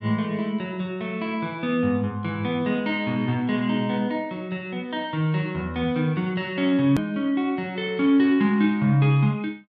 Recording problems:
edit click; at 7 s

